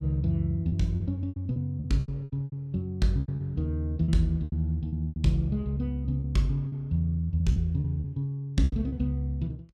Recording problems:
lost packets; 12% of the sound replaced, filled with repeated pitch periods

